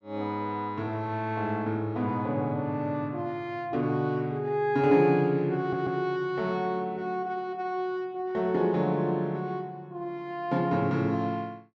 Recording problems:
audio stuttering; at 5.5 s

